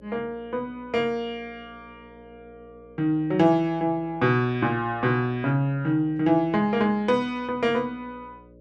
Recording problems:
hum; 60 Hz, harmonics up to 600 Hz, SNR 27 dB

